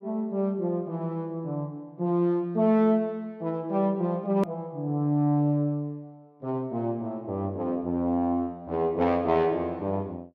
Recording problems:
click at an edit; at 4.5 s

